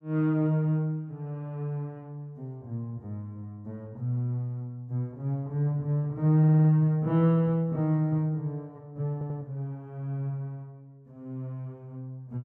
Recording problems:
audio stuttering; at 6.5 s and at 9 s

